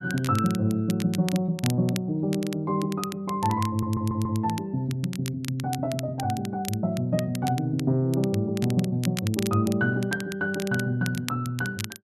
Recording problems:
crackle; vinyl, SNR 14 dB
stutter; at 3.5 s

